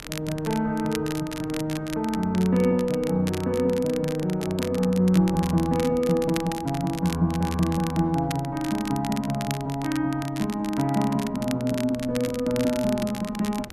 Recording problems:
wind on the microphone; below 310 Hz, SNR 21 dB
crackling; vinyl, SNR 14 dB

